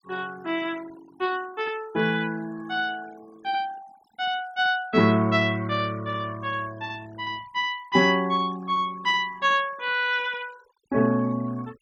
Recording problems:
noise reduction artefacts; signal-to-artefact ratio 23 dB

